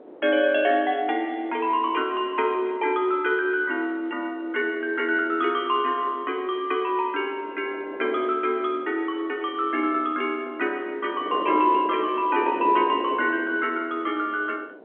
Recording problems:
telephone audio; 280 Hz to 3.4 kHz, G.711
wind on the microphone; below 570 Hz, SNR 15 dB

